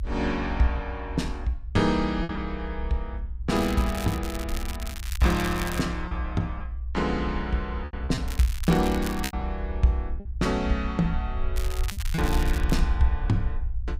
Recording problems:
rumble; below 62 Hz, SNR 5 dB
packet loss; 3% of the sound replaced, filled with repeated pitch periods
crackling; from 3.5 to 6 s, from 8.5 to 9.5 s and from 12 to 13 s; loose cable, SNR 11 dB

